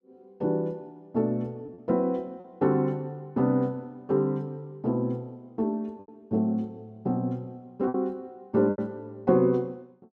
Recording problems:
packet loss; 4% of the sound replaced, filled with repeated pitch periods

